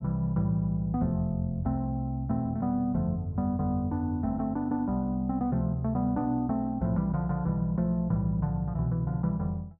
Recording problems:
none

